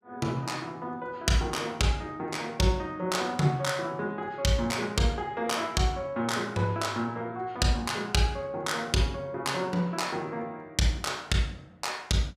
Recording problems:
none

